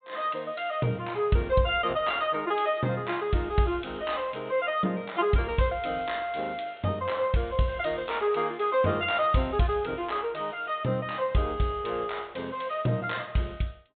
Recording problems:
low-pass filter; nothing above 4 kHz

